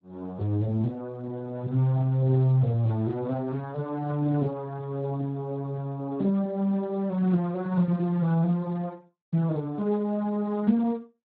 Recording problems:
lossy codec; Speex, log-spectral distance 2 dB

